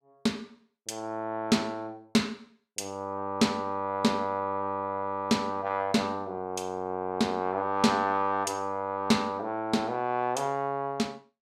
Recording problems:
none

